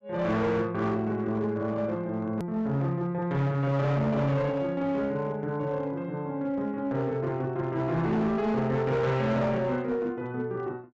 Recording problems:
treble missing; nothing above 8 kHz
distortion; hard clipping, uneven, signal-to-distortion ratio 11 dB
click at an edit; at 2.5 s

